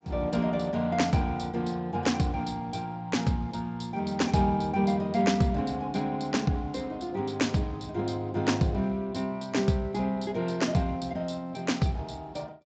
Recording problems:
codec artefacts; Speex, log-spectral distance 4 dB, nothing above 7.3 kHz

